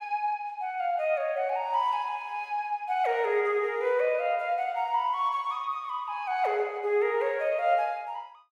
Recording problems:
none

